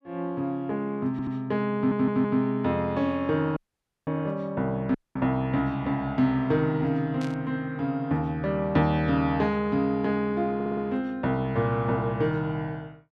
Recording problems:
stutter; at 1 s, at 2 s and at 11 s
dropout; at 3.5 s for 0.5 s and at 5 s
burst of static; at 7 s; peak -12 dB vs average level

